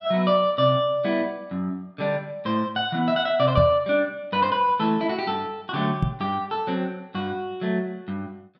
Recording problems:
microphone bump; at 3.5 s and at 6 s; peak +4 dB vs average level

